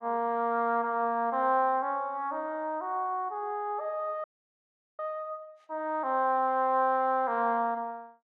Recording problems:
frozen audio; at 4 s for 1 s

